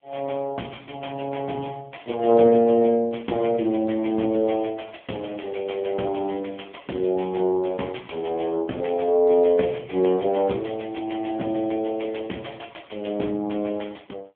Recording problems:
telephone audio; 190 Hz to 3.2 kHz, AMR-NB

